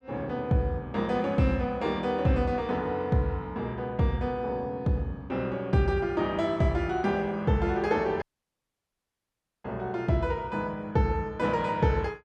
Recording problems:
dropout; at 8 s for 1.5 s

